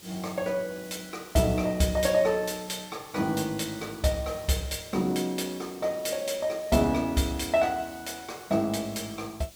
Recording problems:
background hiss; SNR 19 dB

